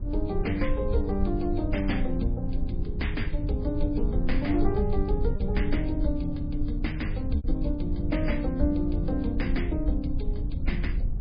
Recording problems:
lossy compression; MP3, log-spectral distance 2 dB, nothing above 5 kHz
rumble; below 68 Hz, SNR 2 dB
wind noise; below 360 Hz, SNR 21 dB
packet loss; 1.1% of the sound replaced, filled with repeated pitch periods

